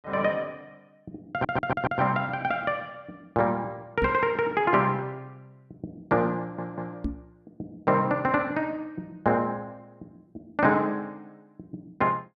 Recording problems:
audio stuttering; at 1.5 s and at 6.5 s
microphone bump; at 4 s and at 7 s; peak +1 dB vs average level

